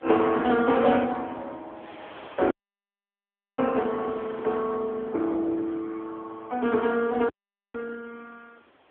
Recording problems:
phone line; 260 Hz to 3.6 kHz, AMR-NB
wind on the microphone; below 2.3 kHz, SNR 25 dB
dropout; at 2.5 s for 1 s and at 7.5 s

